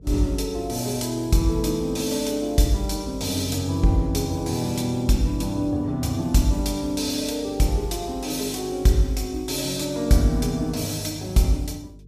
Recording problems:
electrical hum; 50 Hz, harmonics up to 450 Hz, SNR 22 dB

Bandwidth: 15 kHz